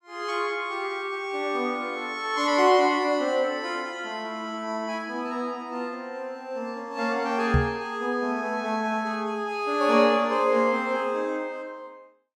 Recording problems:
microphone bump; at 7.5 s; peak +7 dB vs average level

